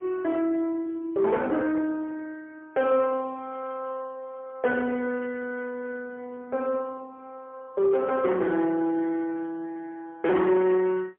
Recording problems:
telephone audio; 260 Hz to 3.3 kHz, AMR-NB, then MP3
distortion; soft clipping, signal-to-distortion ratio 11 dB

